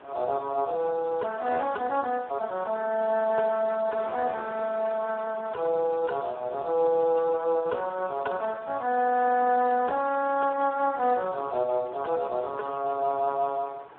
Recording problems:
telephone audio; 300 Hz to 2.1 kHz, Speex
wind noise; below 1.4 kHz, SNR 19 dB

